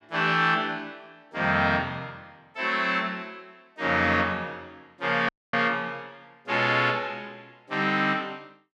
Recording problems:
audio cutting out; at 5.5 s

